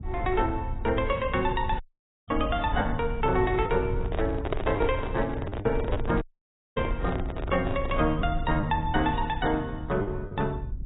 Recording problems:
lossy compression; AAC, log-spectral distance 2 dB, nothing above 3.7 kHz
low-frequency rumble; below 88 Hz, SNR 6 dB
lost packets; 4% of the sound replaced, filled with the last packet
audio cutting out; at 2 s and at 6 s for 0.5 s
microphone handling noise; from 4 to 8 s; peak +4 dB vs average level

